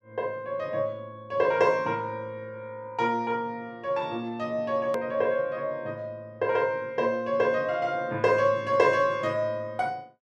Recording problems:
edit click; at 5 s

